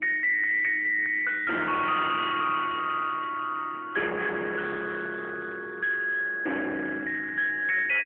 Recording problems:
telephone audio; 470 Hz to 2.5 kHz, AMR-NB
distorted audio; hard clipping, uneven, signal-to-distortion ratio 7 dB

